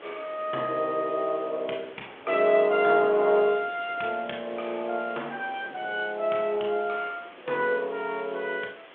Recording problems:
telephone audio; 280 Hz to 3.5 kHz, G.726
background hiss; SNR 22 dB
wind noise; below 700 Hz, SNR 23 dB

